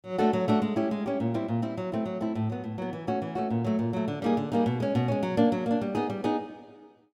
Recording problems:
none

